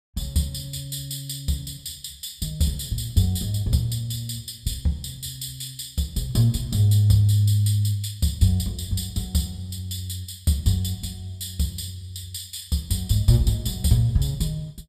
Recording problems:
none

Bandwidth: 14.5 kHz